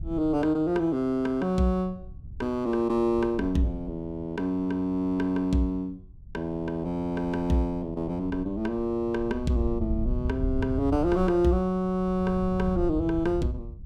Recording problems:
wind on the microphone; below 96 Hz, SNR 10 dB

